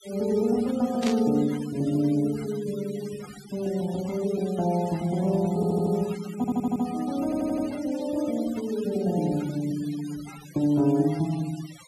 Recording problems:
denoising artefacts; signal-to-artefact ratio 19 dB
burst of static; at 1 s; peak -3 dB vs average level
stutter; at 5.5 s, at 6.5 s and at 7 s

